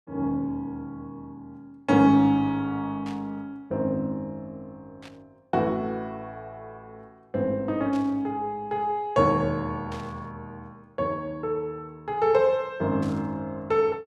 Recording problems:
static burst; 5 times, first at 3 s; peak -14 dB vs average level

